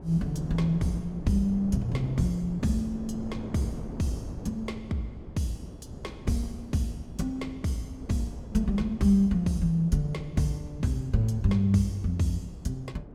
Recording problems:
wind noise; below 300 Hz, SNR 13 dB

